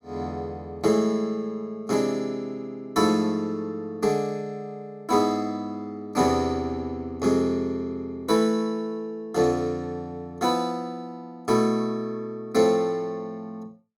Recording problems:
none

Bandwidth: 17 kHz